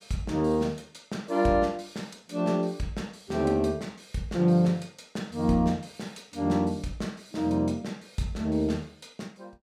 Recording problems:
none

